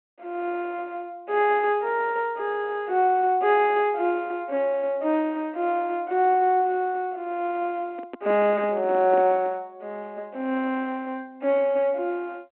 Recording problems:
phone line; 220 Hz to 3.4 kHz, G.726
microphone handling noise; from 8 to 9.5 s; peak -7 dB vs average level

